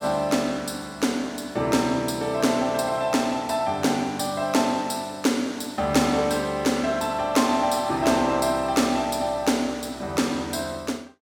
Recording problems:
none

